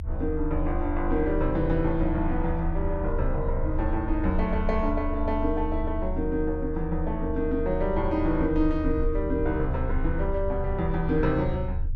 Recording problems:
rumble; below 76 Hz, strongest tone 26 Hz, SNR 5 dB

